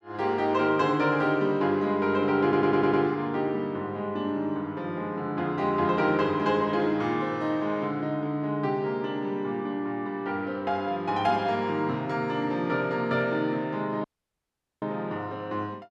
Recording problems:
audio stuttering; at 2.5 s
dropout; at 14 s for 1 s

